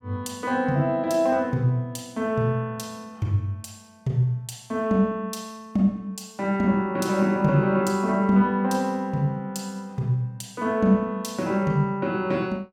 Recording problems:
none

